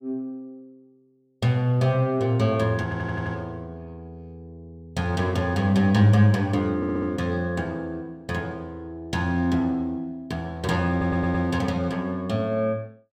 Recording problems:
stutter; at 3 s, at 7 s and at 11 s

